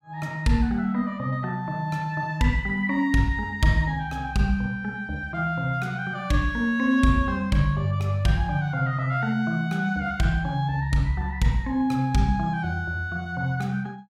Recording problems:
none

